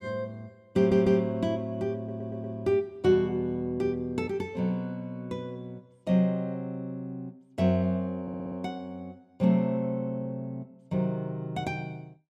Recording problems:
stutter; at 1 s, at 2 s and at 8 s

